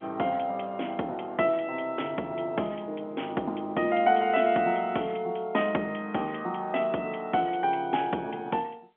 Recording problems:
telephone audio; 240 Hz to 3.8 kHz, G.711

